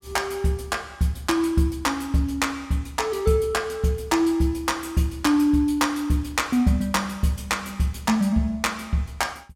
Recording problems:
none

